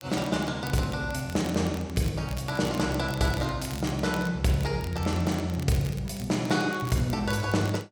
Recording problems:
crackling; vinyl, SNR 18 dB

